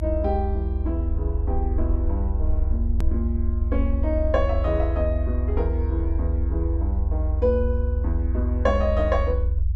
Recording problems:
rumble; below 80 Hz, strongest tone 58 Hz, SNR -3 dB
click at an edit; at 3 s

